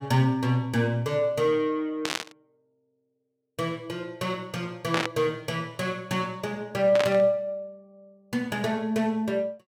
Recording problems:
burst of static; at 2 s, at 5 s and at 7 s; peak +3 dB vs average level

